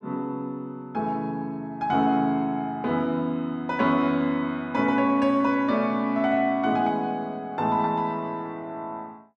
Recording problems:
none

